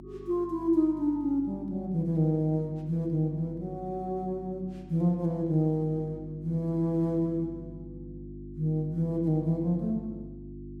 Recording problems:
hum; 50 Hz, harmonics up to 350 Hz, SNR 15 dB

